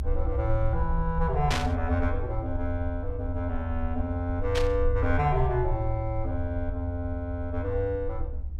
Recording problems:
rumble; below 70 Hz, SNR 4 dB
static burst; at 1.5 s and at 4.5 s; peak +4 dB vs average level

